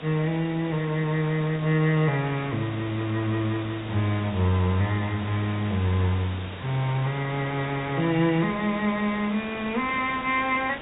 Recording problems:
low-pass filter; nothing above 4 kHz
hiss; SNR 13 dB

